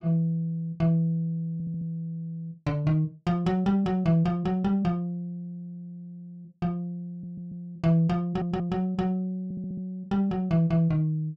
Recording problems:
stutter; 4 times, first at 1.5 s

